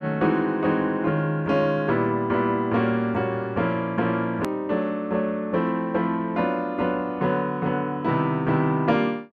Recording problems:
click at an edit; at 4.5 s

